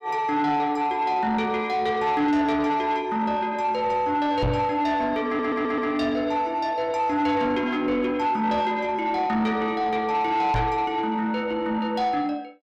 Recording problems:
distortion; soft clipping, signal-to-distortion ratio 12 dB
microphone thump; at 4.5 s and at 11 s; peak +2 dB vs average level
stutter; at 5.5 s

